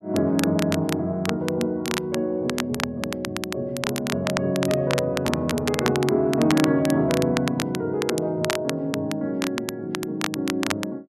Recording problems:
crackle; vinyl, SNR 7 dB

